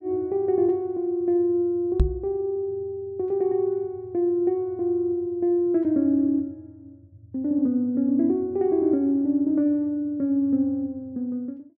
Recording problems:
knock on the microphone; at 2 s; peak +7 dB vs average level

